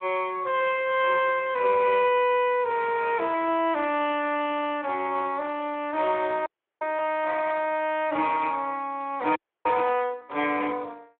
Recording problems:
phone line; 280 Hz to 3.4 kHz, Speex
audio freezing; at 6.5 s and at 9.5 s

